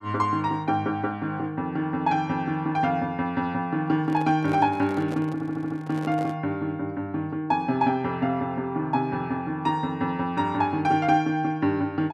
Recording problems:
handling noise; from 4 to 6.5 s; peak -7 dB vs average level
audio stuttering; at 5.5 s

